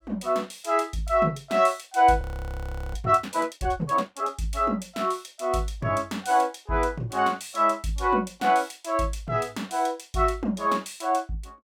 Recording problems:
audio freezing; at 2 s for 0.5 s

